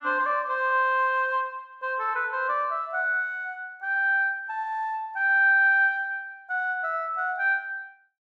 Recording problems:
none

